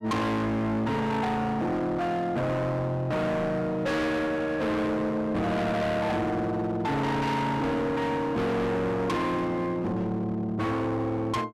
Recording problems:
distortion; hard clipping, signal-to-distortion ratio 6 dB

